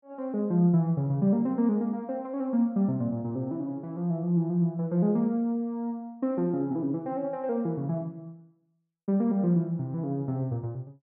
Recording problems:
none

